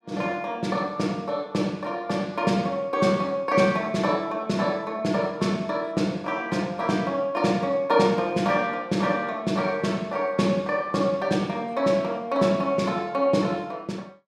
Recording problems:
none

